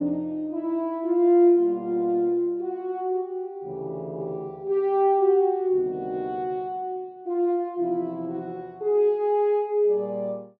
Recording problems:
none

